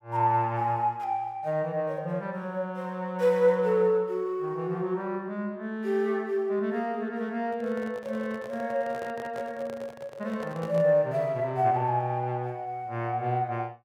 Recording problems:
microphone handling noise; from 7.5 to 11 s; peak -8 dB vs average level

